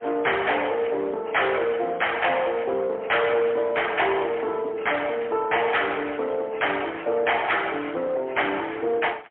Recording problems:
telephone audio; 300 Hz to 3.2 kHz, AMR-NB, then MP3
distorted audio; soft clipping, signal-to-distortion ratio 11 dB

